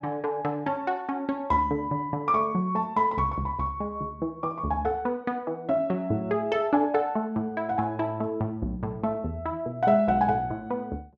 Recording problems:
none

